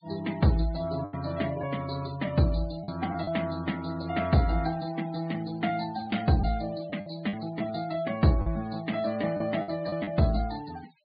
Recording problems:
treble cut off; nothing above 4.7 kHz
denoising artefacts; signal-to-artefact ratio 20 dB
packet loss; 5% of the sound replaced, filled with the last packet

